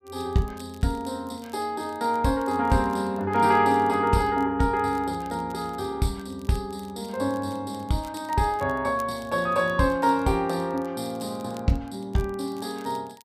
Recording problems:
crackle; vinyl, SNR 28 dB

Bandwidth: 15 kHz